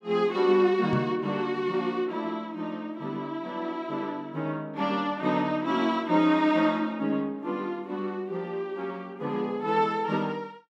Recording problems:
microphone bump; at 1 s; peak +1 dB vs average level

